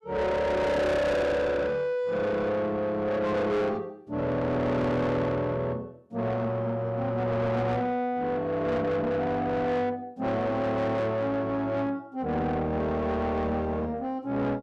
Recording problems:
distorted audio; soft clipping, signal-to-distortion ratio 7 dB

